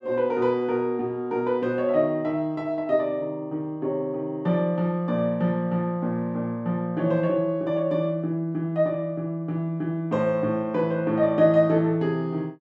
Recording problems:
none

